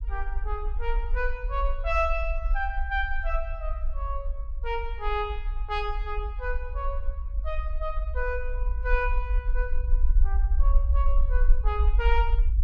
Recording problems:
low-frequency rumble; below 48 Hz, strongest tone 22 Hz, SNR -3 dB

